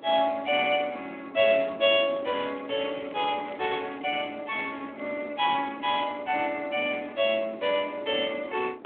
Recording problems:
telephone audio; 240 Hz to 3.4 kHz, Speex
wind noise; below 600 Hz, SNR 19 dB
crackling; from 2 to 5 s; loose cable, SNR 27 dB

